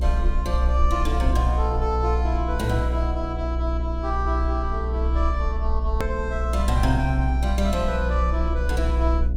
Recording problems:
electrical hum; 60 Hz, harmonics up to 720 Hz, SNR 7 dB
rumble; below 62 Hz, strongest tone 62 Hz, SNR -2 dB
edit click; at 6 s

